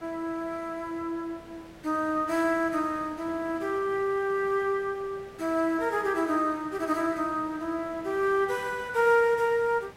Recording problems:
background hiss; slope -6 dB per octave, SNR 21 dB

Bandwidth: 16 kHz